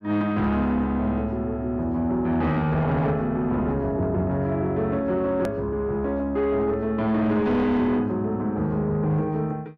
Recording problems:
distorted audio; soft clipping, signal-to-distortion ratio 12 dB
hard cut with a click; at 5.5 s

